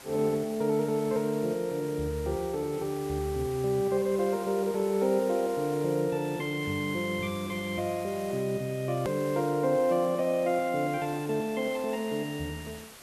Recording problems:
hiss; slope -2 dB per octave, SNR 17 dB
click at an edit; at 9 s

